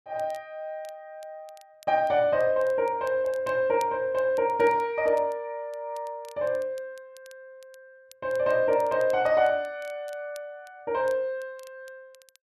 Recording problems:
crackling; vinyl, SNR 29 dB

